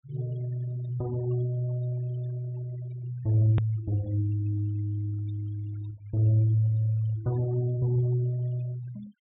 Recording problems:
low-pass filter; nothing above 4 kHz
denoising artefacts; signal-to-artefact ratio 22 dB
hard cut with a click; at 3.5 s

